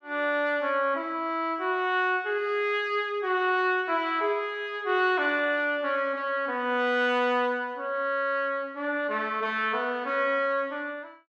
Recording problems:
none

